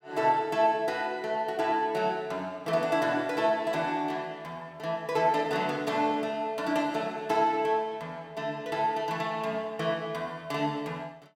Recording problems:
none

